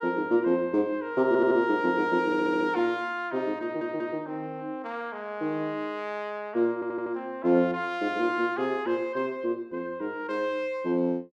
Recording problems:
stutter; 4 times, first at 1.5 s

